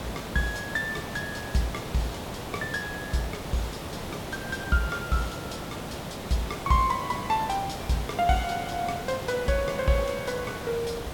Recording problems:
background hiss; slope -5 dB per octave, SNR 6 dB

